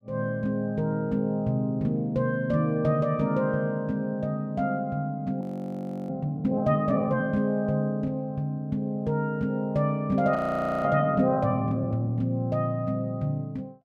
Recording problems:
frozen audio; at 5.5 s for 0.5 s and at 10 s for 0.5 s

